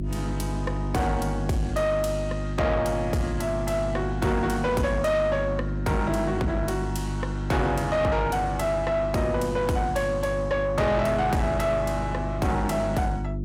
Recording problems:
distortion; soft clipping, signal-to-distortion ratio 11 dB
hum; 50 Hz, harmonics up to 550 Hz, SNR 5 dB

